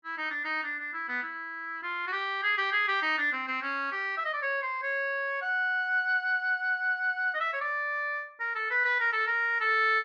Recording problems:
none

